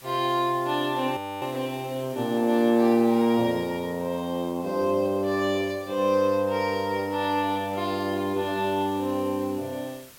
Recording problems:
background hiss; slope 0 dB per octave, SNR 23 dB
audio freezing; at 1 s

